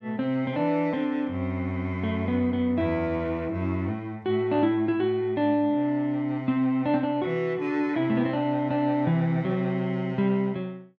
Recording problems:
none

